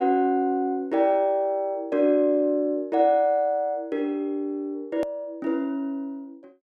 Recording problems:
hard cut with a click; at 5 s

